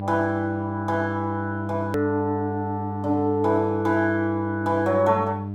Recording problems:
hum; 50 Hz, harmonics up to 700 Hz, SNR 7 dB
hard cut with a click; at 2 s

